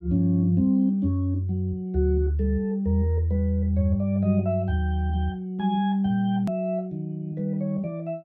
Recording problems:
hard cut with a click; at 6.5 s

